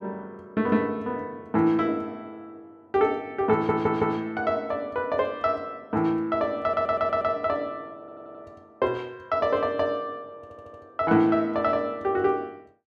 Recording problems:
stutter; 4 times, first at 3.5 s

